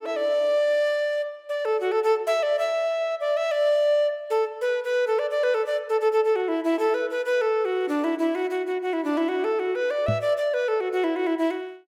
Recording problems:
knock on the microphone; at 10 s; peak +1 dB vs average level

